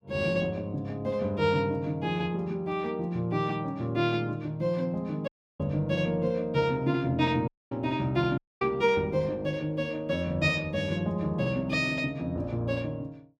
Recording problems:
audio cutting out; at 5.5 s, at 7.5 s and at 8.5 s

